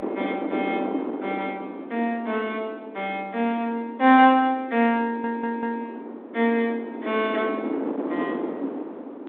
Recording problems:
phone line; 240 Hz to 3.6 kHz, G.726
wind on the microphone; below 510 Hz, SNR 8 dB
audio stuttering; at 5 s

